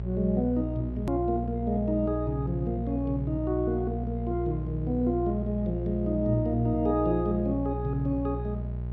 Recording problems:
hum; 60 Hz, harmonics up to 600 Hz, SNR 5 dB
edit click; at 1 s

